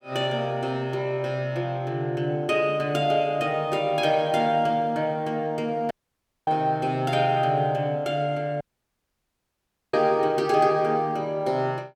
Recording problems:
audio cutting out; at 6 s for 0.5 s and at 8.5 s for 1.5 s

